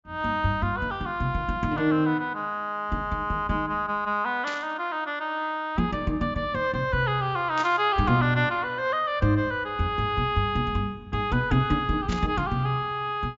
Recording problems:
treble cut off; nothing above 7.4 kHz
burst of static; at 4.5 s, at 7.5 s and at 12 s; peak -6 dB vs average level

